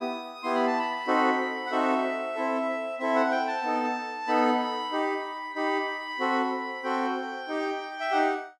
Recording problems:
none

